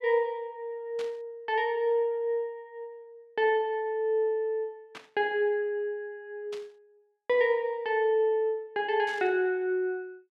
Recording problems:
burst of static; 4 times, first at 1 s; peak -11 dB vs average level

